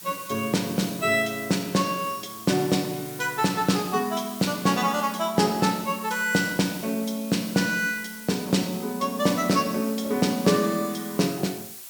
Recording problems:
background hiss; slope +2 dB per octave, SNR 14 dB

